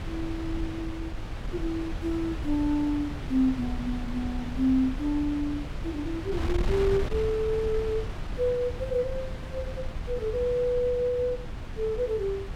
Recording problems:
wind on the microphone; below 150 Hz, SNR 7 dB

